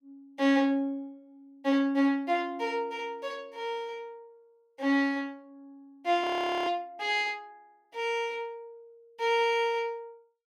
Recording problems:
audio freezing; at 6 s

